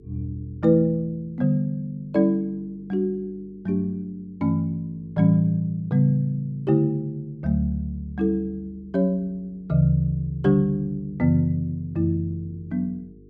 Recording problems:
electrical hum; 50 Hz, harmonics up to 450 Hz, SNR 28 dB

